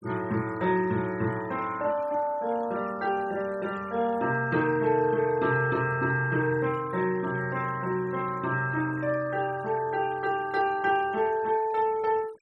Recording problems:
denoising artefacts; signal-to-artefact ratio 22 dB

